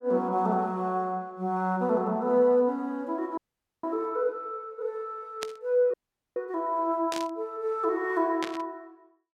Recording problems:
frozen audio; at 3.5 s and at 6 s
burst of static; at 5.5 s, at 7 s and at 8.5 s; peak -2 dB vs average level

